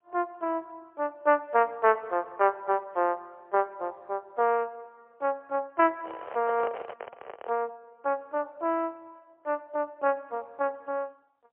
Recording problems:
phone line; 340 Hz to 3.3 kHz, AMR-NB, then MP3
handling noise; from 6 to 7.5 s; peak -3 dB vs average level

